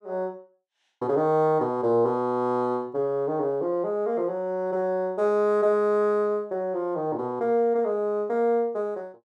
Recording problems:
none

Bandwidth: 12 kHz